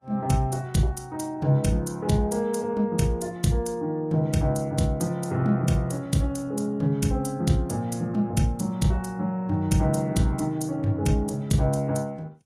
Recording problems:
lossy codec; Vorbis, log-spectral distance 2 dB, nothing above 13.1 kHz

